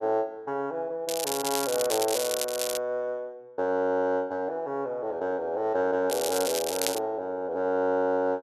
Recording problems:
crackling; from 1 to 3 s and at 6 s; loose cable, SNR 3 dB

